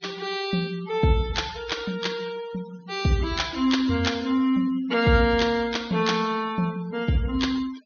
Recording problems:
treble missing; nothing above 6.6 kHz
denoising artefacts; signal-to-artefact ratio 19 dB

